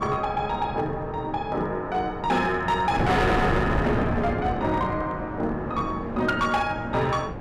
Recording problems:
distorted audio; hard clipping, uneven, signal-to-distortion ratio 11 dB
wind on the microphone; below 570 Hz, SNR 5 dB

